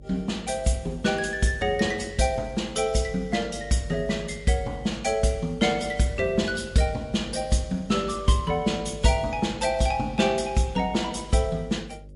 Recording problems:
lossy compression; MP3, log-spectral distance 3 dB, nothing above 10.1 kHz
electrical hum; 50 Hz, harmonics up to 600 Hz, SNR 19 dB

